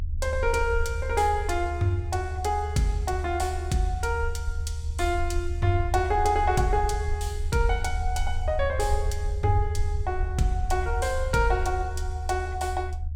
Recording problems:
rumble; below 76 Hz, SNR 4 dB

